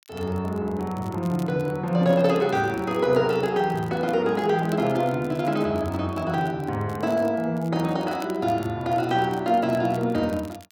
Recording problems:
crackling; vinyl, SNR 26 dB

